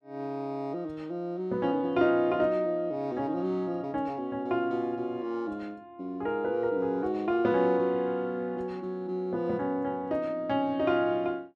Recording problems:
none

